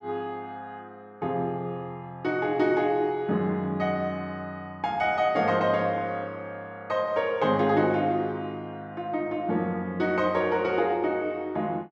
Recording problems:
none

